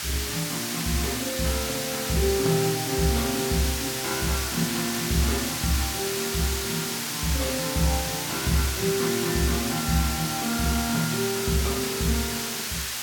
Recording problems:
electrical hum; 60 Hz, harmonics up to 840 Hz, SNR 25 dB
background hiss; slope +3 dB per octave, SNR 1 dB

